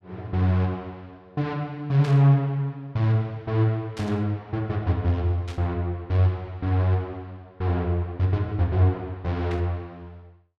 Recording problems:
static burst; 4 times, first at 2 s; peak -10 dB vs average level

